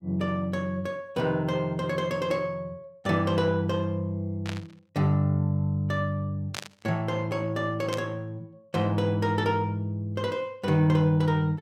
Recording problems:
burst of static; at 4.5 s, at 6.5 s and at 8 s; peak -3 dB vs average level

